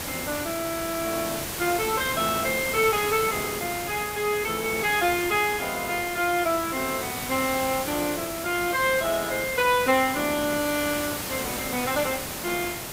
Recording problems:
hiss; slope -2 dB per octave, SNR 5 dB

